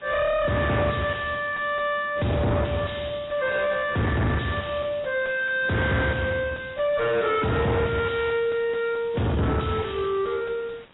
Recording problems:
codec artefacts; AAC, log-spectral distance 8 dB, nothing above 3.8 kHz
distorted audio; soft clipping, signal-to-distortion ratio 5 dB
background hiss; SNR 24 dB

